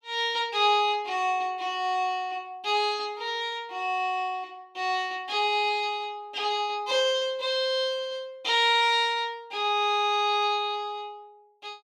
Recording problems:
none

